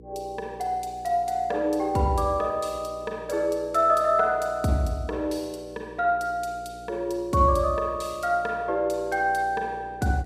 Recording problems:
hum; 60 Hz, harmonics up to 480 Hz, SNR 22 dB

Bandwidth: 15 kHz